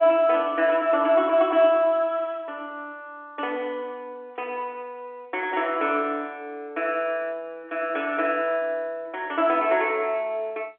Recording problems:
telephone audio; 260 Hz to 3.4 kHz, G.711

